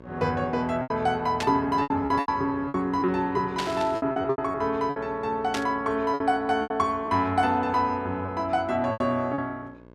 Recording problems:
hum; 60 Hz, harmonics up to 2.2 kHz, SNR 21 dB
packet loss; 10% of the sound replaced, filled with repeated pitch periods
static burst; at 1.5 s, at 3.5 s and at 5.5 s; peak 0 dB vs average level

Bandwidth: 14 kHz